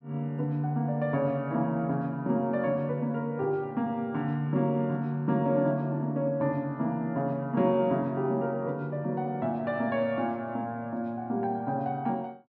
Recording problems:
none

